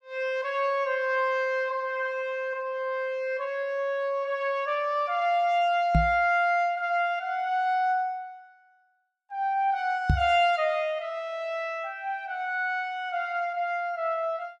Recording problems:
knock on the microphone; at 6 s and at 10 s; peak +7 dB vs average level

